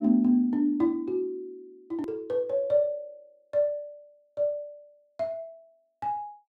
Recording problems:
click at an edit; at 2 s

